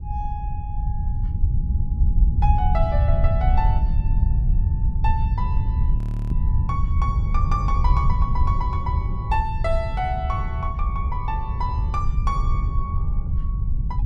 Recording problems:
wind on the microphone; below 84 Hz, SNR -6 dB
frozen audio; at 6 s

